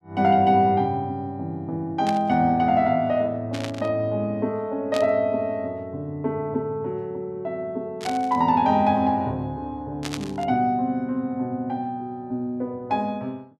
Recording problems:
burst of static; 5 times, first at 2 s; peak -4 dB vs average level

